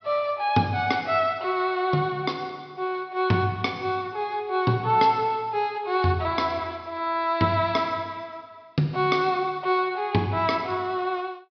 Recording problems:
treble cut off; nothing above 5.5 kHz

